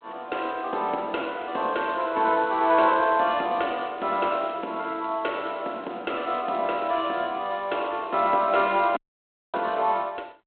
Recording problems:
telephone audio; 240 Hz to 4 kHz, G.726
audio cutting out; at 9 s for 0.5 s

